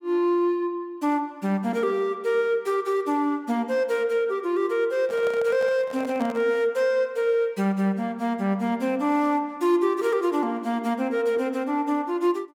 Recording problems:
handling noise; from 5 to 6.5 s; peak -7 dB vs average level

